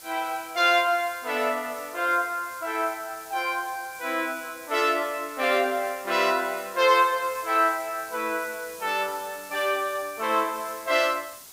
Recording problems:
hiss; SNR 17 dB

